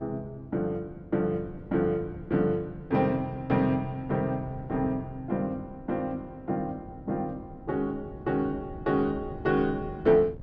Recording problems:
wind on the microphone; below 220 Hz, SNR 17 dB

